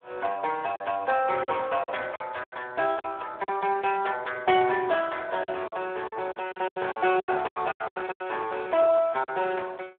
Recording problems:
telephone audio; 320 Hz to 3.6 kHz, Speex
lost packets; 11% of the sound replaced, filled with silence
static burst; at 2 s; peak -8 dB vs average level

